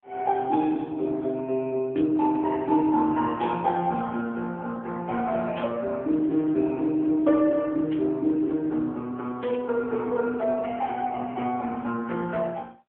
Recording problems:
phone line; 170 Hz to 3.6 kHz, AMR-NB
burst of static; 5 times, first at 2 s; peak -9 dB vs average level

